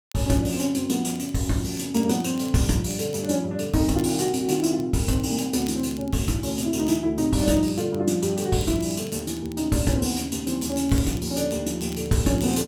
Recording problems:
crackling; vinyl, SNR 24 dB

